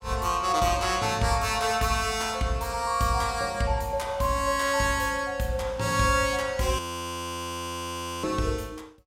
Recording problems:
frozen audio; at 7 s for 1.5 s

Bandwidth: 16.5 kHz